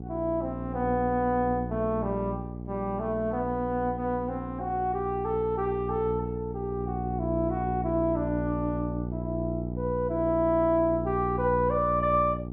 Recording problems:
hum; 60 Hz, harmonics up to 780 Hz, SNR 6 dB

